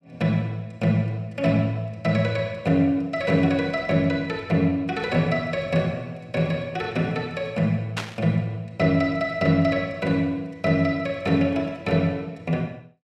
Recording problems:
static burst; at 8 s; peak -1 dB vs average level

